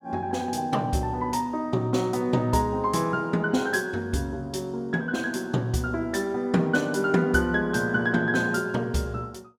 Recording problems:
none

